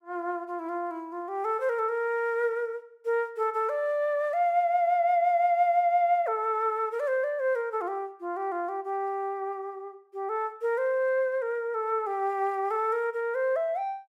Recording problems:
none

